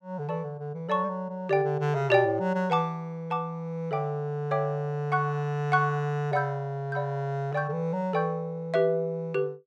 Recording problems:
none

